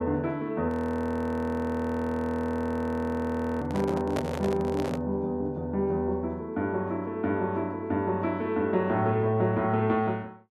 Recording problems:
audio freezing; at 0.5 s for 3 s
handling noise; from 3.5 to 5 s; peak +1 dB vs average level

